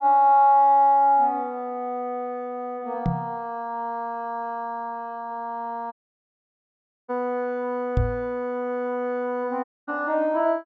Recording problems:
treble missing; nothing above 8 kHz
microphone thump; at 3 s and at 8 s; peak +4 dB vs average level
audio cutting out; at 6 s for 1 s and at 9.5 s

